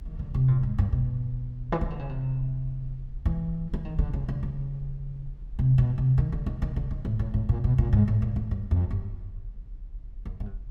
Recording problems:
low-frequency rumble; below 46 Hz, SNR 14 dB

